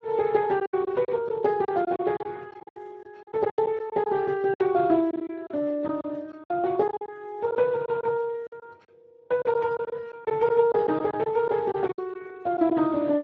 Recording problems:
codec artefacts; Speex, log-spectral distance 2 dB
lost packets; 12% of the sound replaced, filled with silence

